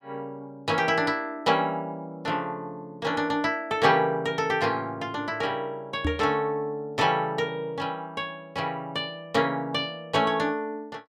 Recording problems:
knock on the microphone; at 6 s; peak +3 dB vs average level

